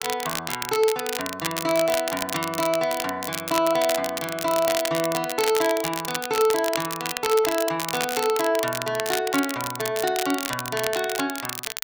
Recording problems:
crackling; vinyl, SNR 5 dB

